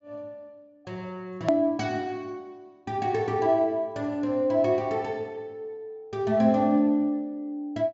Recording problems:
low-pass filter; nothing above 7.5 kHz
hard cut with a click; at 1.5 s

